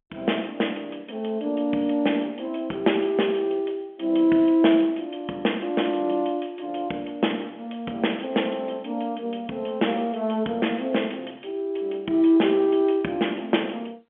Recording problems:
telephone audio; 170 Hz to 3.4 kHz, G.711

